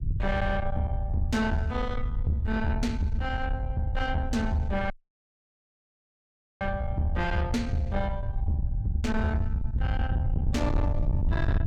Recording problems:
distorted audio; soft clipping, signal-to-distortion ratio 7 dB
rumble; below 94 Hz, SNR 2 dB
dropout; at 5 s for 1.5 s

